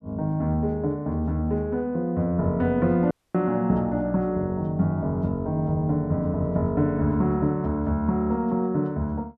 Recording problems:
audio cutting out; at 3 s

